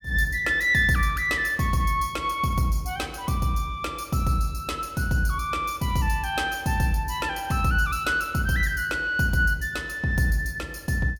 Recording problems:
none

